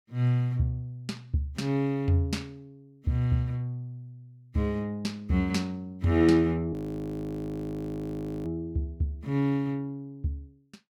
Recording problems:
audio freezing; at 6.5 s for 1.5 s

